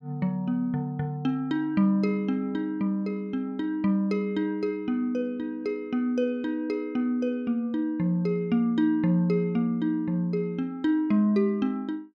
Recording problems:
none

